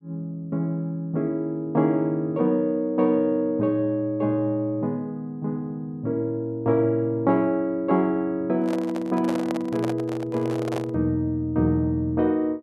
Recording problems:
handling noise; from 8.5 to 11 s; peak -3 dB vs average level

